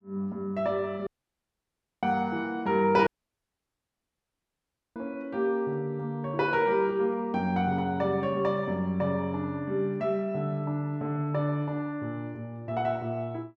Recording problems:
dropout; at 1 s for 1 s and at 3 s for 2 s

